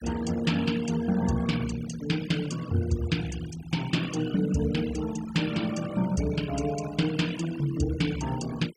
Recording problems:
denoising artefacts; signal-to-artefact ratio 15 dB

